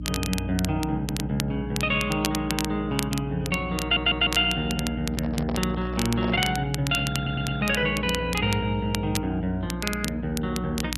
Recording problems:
lossy compression; MP2, log-spectral distance 2 dB
hum; 60 Hz, harmonics up to 300 Hz, SNR 9 dB
crackle; vinyl, SNR 9 dB
audio stuttering; at 1 s, at 4 s and at 7 s
microphone handling noise; from 5 to 6.5 s; peak -3 dB vs average level

